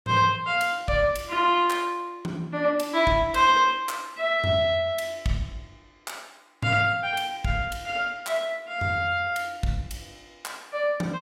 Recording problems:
none

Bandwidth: 16 kHz